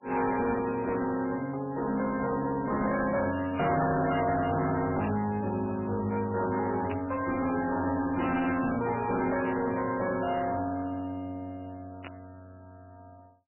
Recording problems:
lossy compression; MP3, log-spectral distance 4 dB, nothing above 2.4 kHz
distortion; hard clipping, uneven, signal-to-distortion ratio 7 dB
static burst; 4 times, first at 5 s; peak -7 dB vs average level

